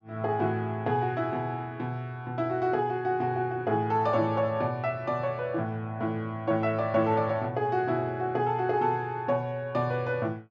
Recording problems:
treble cut off; nothing above 8 kHz

